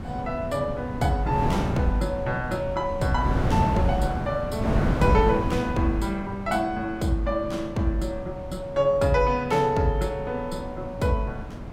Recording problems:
wind noise; below 310 Hz, SNR 5 dB

